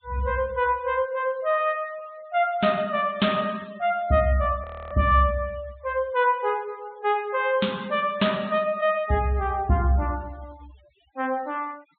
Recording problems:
treble missing; nothing above 4 kHz
noise reduction artefacts; signal-to-artefact ratio 25 dB
audio freezing; at 4.5 s

